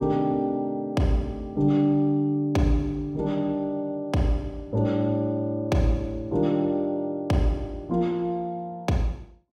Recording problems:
none

